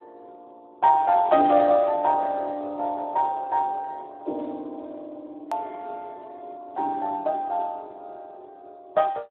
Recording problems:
telephone audio; 280 Hz to 3.2 kHz, Speex
click at an edit; at 5.5 s

